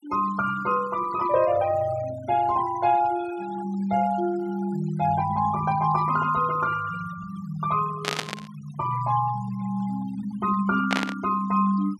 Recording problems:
noise reduction artefacts; signal-to-artefact ratio 17 dB
static burst; at 8 s and at 11 s; peak +4 dB vs average level

